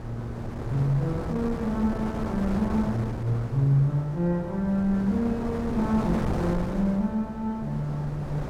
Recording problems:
wind on the microphone; below 510 Hz, SNR 7 dB

